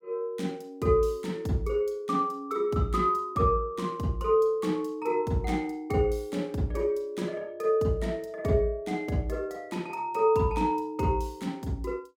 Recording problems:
none

